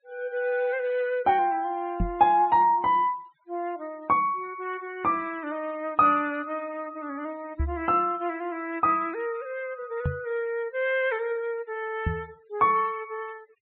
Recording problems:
treble missing; nothing above 4 kHz
noise reduction artefacts; signal-to-artefact ratio 26 dB
microphone thump; 4 times, first at 2 s; peak +2 dB vs average level

